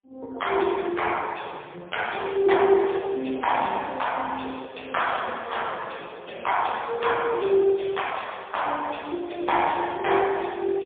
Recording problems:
phone line; 280 Hz to 3.4 kHz, AMR-NB, then MP3

